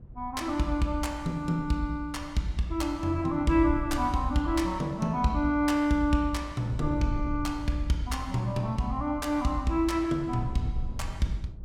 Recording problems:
wind on the microphone; below 96 Hz, SNR 13 dB

